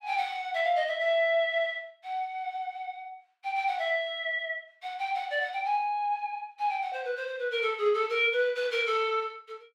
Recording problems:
none

